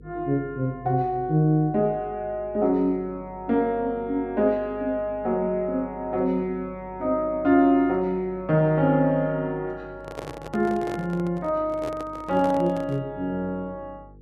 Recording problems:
hum; 50 Hz, harmonics up to 500 Hz, SNR 23 dB
microphone handling noise; from 10 to 13 s; peak -6 dB vs average level

